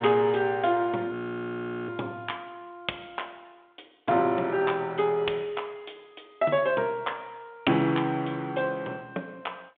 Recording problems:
telephone audio; 190 Hz to 3.6 kHz, G.726
audio freezing; at 1 s for 1 s

